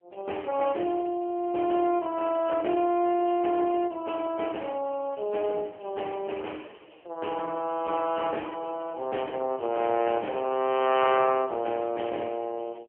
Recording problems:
phone line; 260 Hz to 3.1 kHz, AMR-NB

